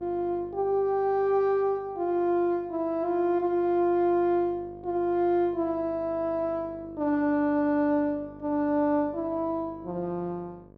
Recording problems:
hum; 50 Hz, harmonics up to 1.2 kHz, SNR 23 dB

